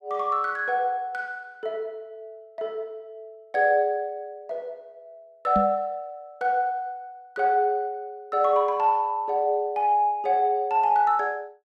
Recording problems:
microphone bump; at 5.5 s; peak 0 dB vs average level

